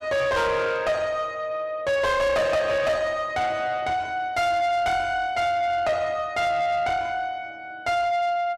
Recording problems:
distortion; soft clipping, signal-to-distortion ratio 8 dB

